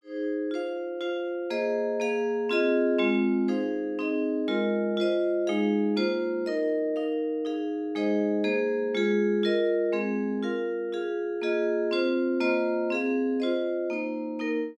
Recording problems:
none

